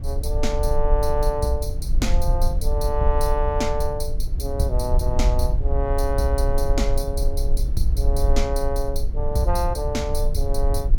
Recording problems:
low-frequency rumble; below 56 Hz, SNR -1 dB

